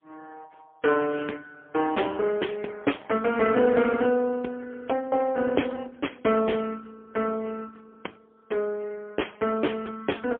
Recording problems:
telephone audio; 240 Hz to 3.3 kHz, AMR-NB, then MP3

